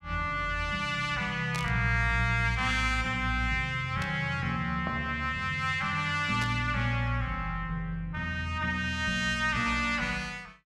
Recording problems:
burst of static; at 1.5 s, at 4 s and at 6.5 s; peak -5 dB vs average level

